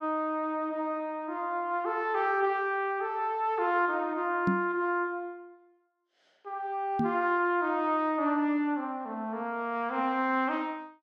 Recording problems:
microphone bump; at 4.5 s and at 7 s; peak +5 dB vs average level

